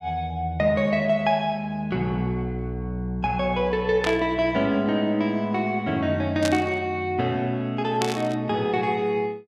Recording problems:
static burst; at 4 s, at 6.5 s and at 8 s; peak 0 dB vs average level

